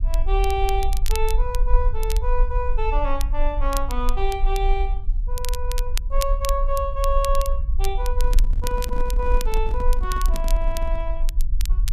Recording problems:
low-frequency rumble; below 42 Hz, SNR -2 dB
crackle; vinyl, SNR 9 dB
handling noise; from 8 to 11 s; peak -5 dB vs average level

